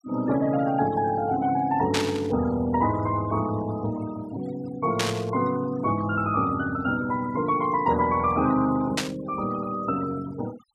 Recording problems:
noise reduction artefacts; signal-to-artefact ratio 16 dB
static burst; at 2 s, at 5 s and at 9 s; peak +3 dB vs average level

